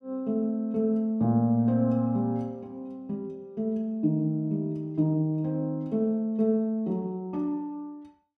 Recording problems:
none

